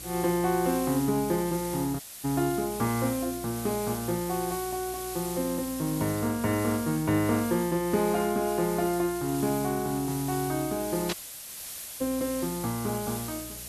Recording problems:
mains hum; 60 Hz, harmonics up to 660 Hz, SNR 20 dB
background hiss; slope +1 dB per octave, SNR 9 dB
dropout; at 2 s and at 11 s for 1 s
static burst; at 11 s; peak 0 dB vs average level

